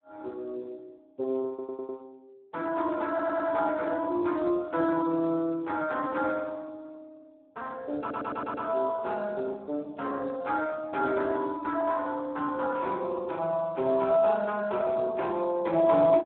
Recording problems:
phone line; 220 Hz to 2.7 kHz, Speex
stutter; at 1.5 s, at 3 s and at 8 s

